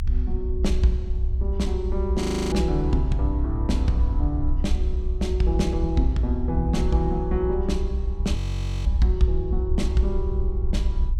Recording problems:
rumble; below 66 Hz, SNR -1 dB
audio freezing; at 2 s and at 8.5 s

